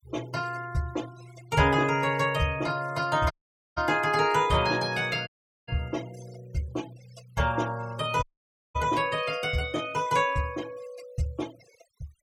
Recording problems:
noise reduction artefacts; signal-to-artefact ratio 21 dB
dropout; at 3.5 s, at 5.5 s and at 8 s for 0.5 s

